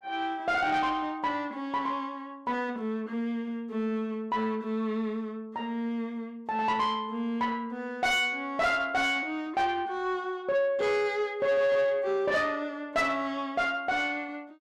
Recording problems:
distorted audio; soft clipping, signal-to-distortion ratio 12 dB

